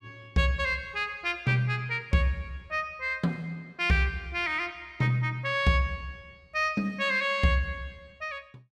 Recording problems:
none

